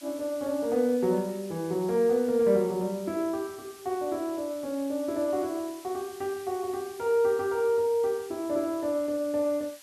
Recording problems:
background hiss; slope +3 dB per octave, SNR 20 dB

